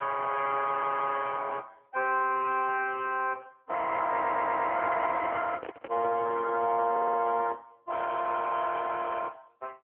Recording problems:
telephone audio; 320 Hz to 2.1 kHz, AMR-NB
stutter; at 0.5 s, at 4 s and at 7 s
microphone handling noise; from 5 to 6.5 s; peak -7 dB vs average level

